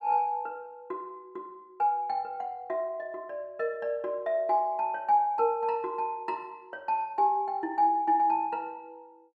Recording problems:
none

